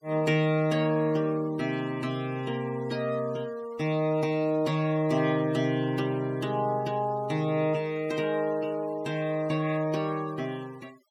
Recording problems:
denoising artefacts; signal-to-artefact ratio 23 dB

